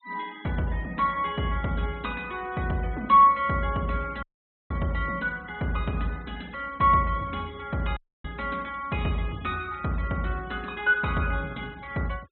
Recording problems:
treble cut off; nothing above 4 kHz
denoising artefacts; signal-to-artefact ratio 25 dB
audio cutting out; at 4 s and at 8 s

